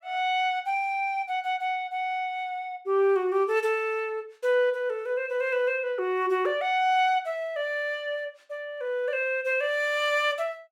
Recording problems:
none

